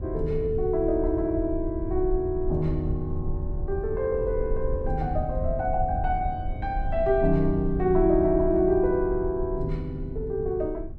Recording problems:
low-frequency rumble; below 70 Hz, SNR 8 dB

